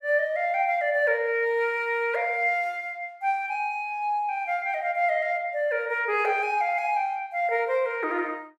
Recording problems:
none

